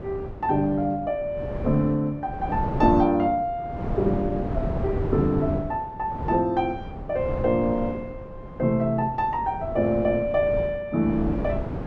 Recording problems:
wind on the microphone; below 380 Hz, SNR 8 dB

